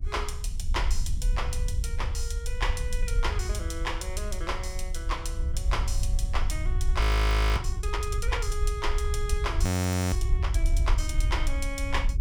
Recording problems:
rumble; below 92 Hz, SNR -1 dB
wind on the microphone; below 66 Hz, SNR -2 dB
frozen audio; at 7 s for 0.5 s and at 9.5 s

